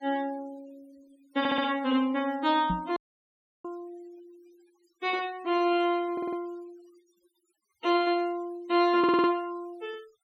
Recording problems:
noise reduction artefacts; signal-to-artefact ratio 24 dB
audio stuttering; at 1.5 s, at 6 s and at 9 s
microphone thump; at 2.5 s; peak 0 dB vs average level
audio cutting out; at 3 s for 0.5 s

